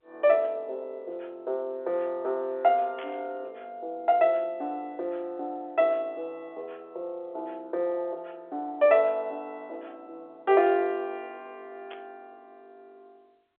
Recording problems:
telephone audio; 320 Hz to 3.6 kHz, G.711
burst of static; at 3 s and at 12 s; peak -12 dB vs average level

